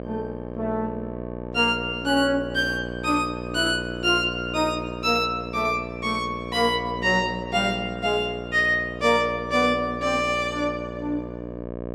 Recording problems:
mains hum; 60 Hz, harmonics up to 1.3 kHz, SNR 10 dB

